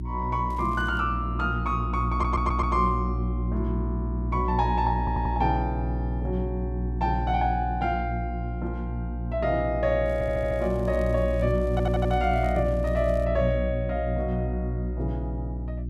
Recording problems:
hum; 60 Hz, harmonics up to 360 Hz, SNR 2 dB
crackle; at 0.5 s and from 10 to 13 s; loose cable, SNR 27 dB
stutter; 4 times, first at 2 s

